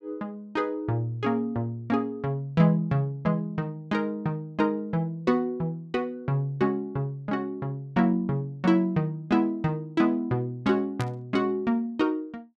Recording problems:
static burst; at 11 s; peak -7 dB vs average level

